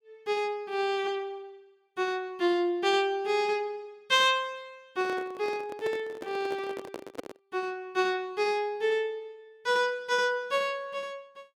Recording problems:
handling noise; from 5 to 7.5 s; peak -3 dB vs average level

